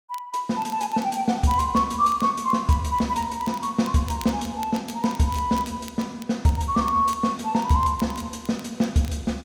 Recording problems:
crackling; vinyl, SNR 22 dB

